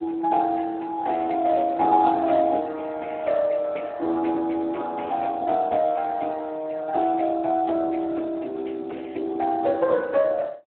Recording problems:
telephone audio; 280 Hz to 2.1 kHz, Speex

